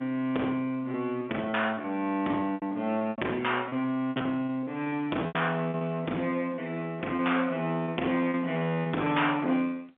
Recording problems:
phone line; 240 Hz to 3.5 kHz, G.711
distortion; hard clipping, signal-to-distortion ratio 15 dB
packet loss; 10% of the sound replaced, filled with repeated pitch periods

